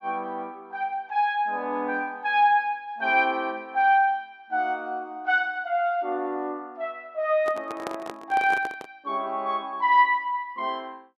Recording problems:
handling noise; from 7.5 to 9 s; peak -3 dB vs average level

